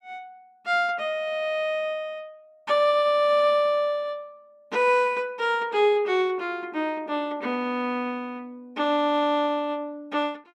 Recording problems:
none

